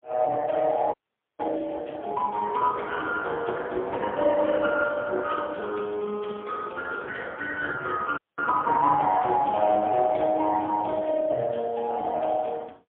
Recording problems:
phone line; 240 Hz to 3 kHz, AMR-NB, then MP3
frozen audio; at 1 s and at 8 s

